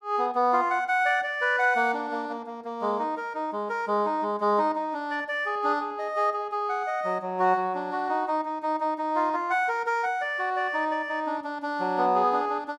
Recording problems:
none

